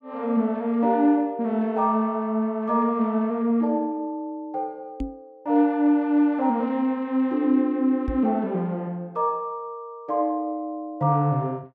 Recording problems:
knock on the microphone; at 5 s and at 8 s; peak -1 dB vs average level

